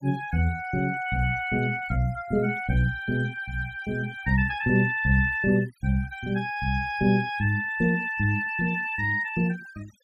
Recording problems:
denoising artefacts; signal-to-artefact ratio 23 dB

